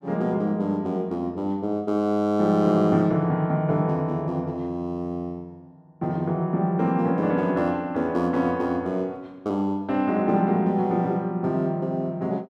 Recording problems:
none

